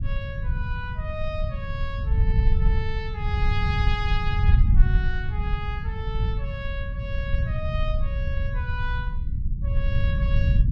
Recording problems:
low-frequency rumble; below 86 Hz, SNR -8 dB

